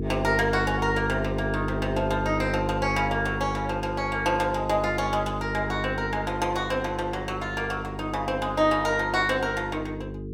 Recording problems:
hum; 50 Hz, harmonics up to 450 Hz, SNR 6 dB

